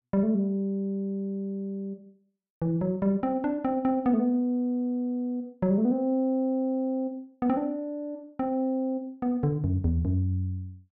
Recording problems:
none

